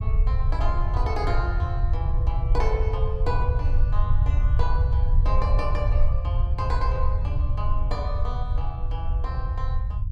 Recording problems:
low-frequency rumble; below 74 Hz, SNR -8 dB

